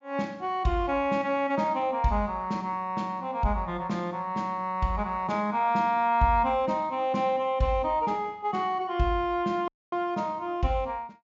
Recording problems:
low-pass filter; nothing above 7.4 kHz
dropout; at 9.5 s

